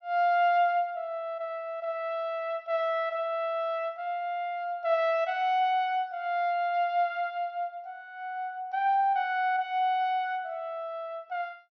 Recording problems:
treble missing; nothing above 6.1 kHz

